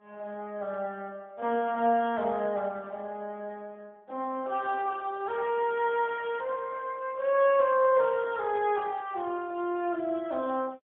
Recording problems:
phone line; 280 Hz to 3.3 kHz, AMR-NB, then MP3

